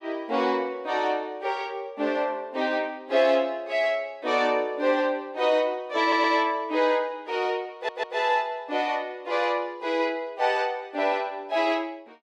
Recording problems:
stutter; at 6 s and at 7.5 s

